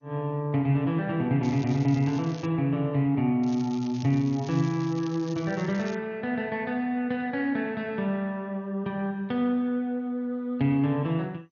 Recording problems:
codec artefacts; MP2, then MP2, log-spectral distance 2 dB
crackle; from 1.5 to 2.5 s and from 3.5 to 6 s; loose cable, SNR 21 dB

